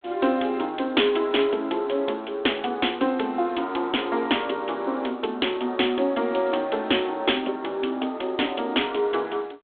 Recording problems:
phone line; 220 Hz to 3.5 kHz, G.726

